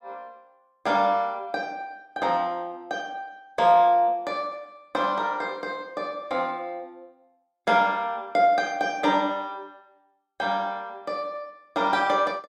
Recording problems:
none

